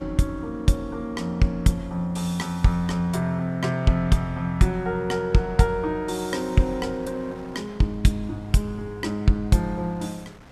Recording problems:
wind noise; below 1.4 kHz, SNR 26 dB

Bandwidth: 14.5 kHz